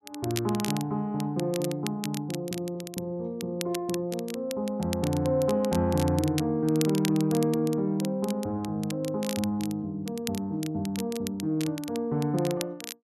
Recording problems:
crackling; vinyl, SNR 12 dB

